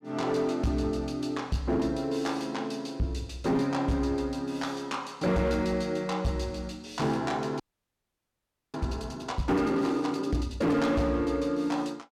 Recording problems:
distorted audio; hard clipping, signal-to-distortion ratio 10 dB
audio freezing; at 7.5 s for 1 s

